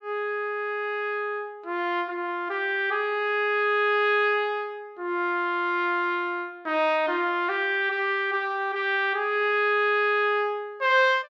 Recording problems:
none

